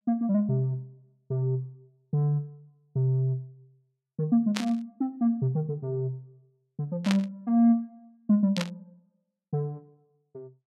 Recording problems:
burst of static; at 4.5 s, at 7 s and at 8.5 s; peak +1 dB vs average level

